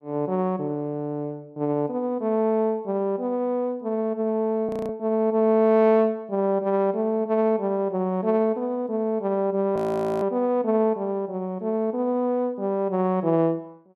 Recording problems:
frozen audio; at 4.5 s and at 10 s

